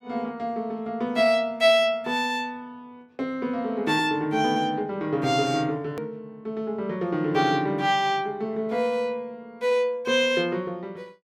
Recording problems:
hard cut with a click; at 6 s

